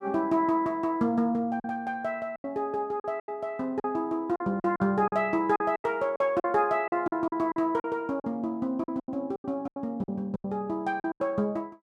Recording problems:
packet loss; 12% of the sound replaced, filled with silence

